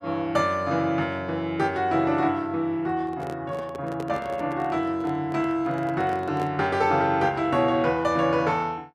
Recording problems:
microphone handling noise; from 3 to 6.5 s; peak -6 dB vs average level

